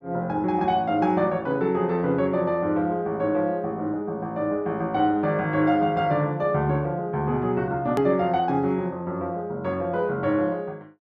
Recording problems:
click at an edit; at 8 s

